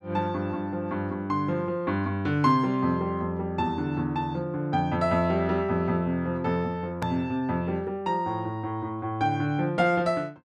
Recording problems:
hard cut with a click; at 7 s

